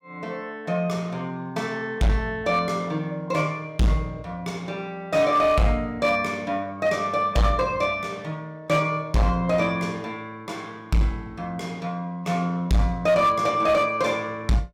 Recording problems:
distorted audio; hard clipping, signal-to-distortion ratio 10 dB

